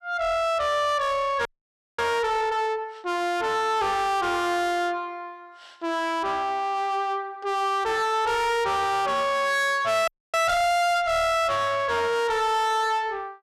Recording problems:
distorted audio; soft clipping, signal-to-distortion ratio 6 dB
audio freezing; at 1.5 s for 0.5 s and at 10 s

